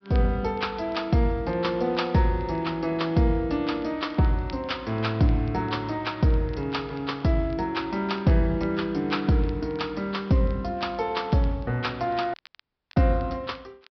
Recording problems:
treble missing; nothing above 5.5 kHz
crackle; vinyl, SNR 30 dB
dropout; at 12 s for 0.5 s

